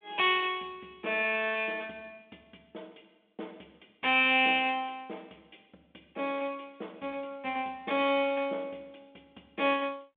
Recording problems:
phone line; 220 Hz to 3.6 kHz, G.726

